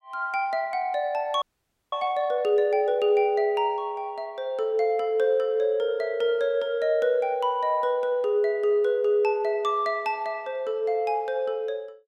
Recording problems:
audio freezing; at 1.5 s for 0.5 s

